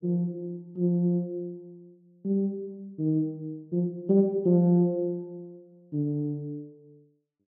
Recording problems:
none

